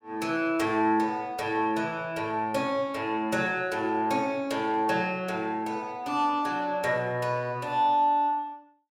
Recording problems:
none

